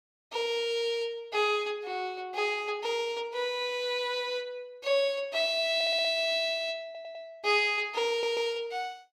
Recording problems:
audio stuttering; at 6 s, at 7 s and at 8 s

